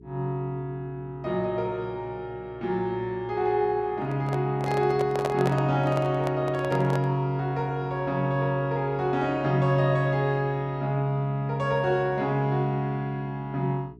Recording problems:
hum; 60 Hz, harmonics up to 420 Hz, SNR 22 dB
handling noise; from 4 to 7 s; peak +1 dB vs average level

